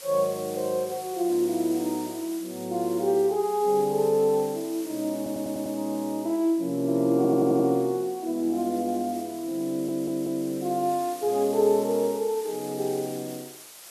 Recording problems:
hiss; slope 0 dB per octave, SNR 17 dB
audio stuttering; at 5 s, at 7 s and at 9.5 s

